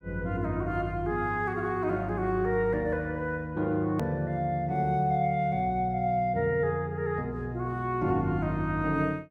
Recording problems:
click at an edit; at 4 s

